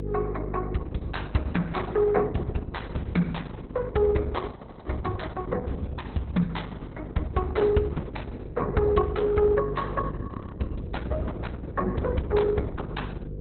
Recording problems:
lossy codec; Opus, log-spectral distance 4 dB, nothing above 4.1 kHz
hum; 50 Hz, harmonics up to 500 Hz, SNR 9 dB
frozen audio; at 4.5 s and at 10 s

